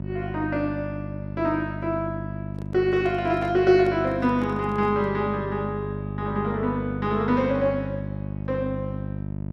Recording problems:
electrical hum; 50 Hz, harmonics up to 700 Hz, SNR 7 dB
microphone handling noise; from 2.5 to 5 s; peak -9 dB vs average level

